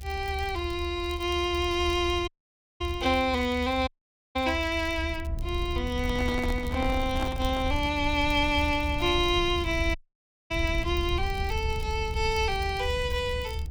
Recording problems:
low-frequency rumble; below 78 Hz, SNR 7 dB
crackle; vinyl, SNR 24 dB
dropout; at 2.5 s for 0.5 s, at 4 s and at 10 s for 0.5 s
handling noise; from 6 to 8 s; peak -3 dB vs average level

